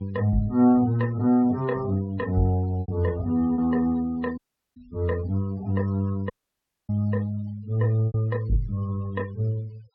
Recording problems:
low-pass filter; nothing above 5.5 kHz
noise reduction artefacts; signal-to-artefact ratio 24 dB
packet loss; 2% of the sound replaced, filled with repeated pitch periods
dropout; at 4.5 s and at 6.5 s for 0.5 s

